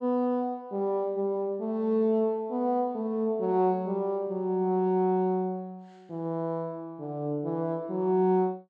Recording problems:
none

